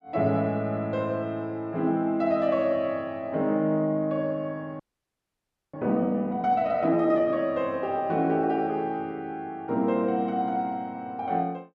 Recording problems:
audio freezing; at 5 s for 1 s

